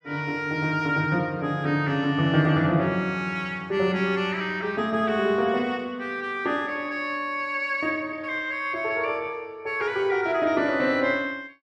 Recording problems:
none

